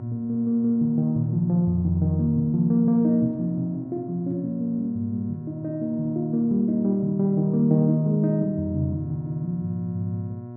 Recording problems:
electrical hum; 60 Hz, harmonics up to 1.1 kHz, SNR 17 dB

